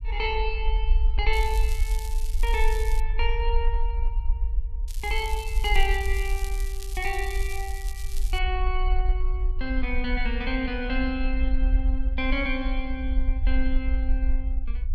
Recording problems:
rumble; below 50 Hz, SNR -2 dB
crackling; from 1.5 to 3 s and from 5 to 8.5 s; loose cable, SNR 12 dB

